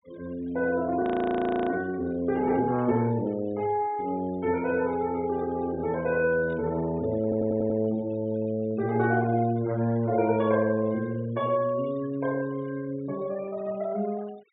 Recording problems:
low-pass filter; nothing above 4 kHz
denoising artefacts; signal-to-artefact ratio 23 dB
frozen audio; at 1 s for 0.5 s
burst of static; at 6.5 s; peak -25 dB vs average level
stutter; at 7 s

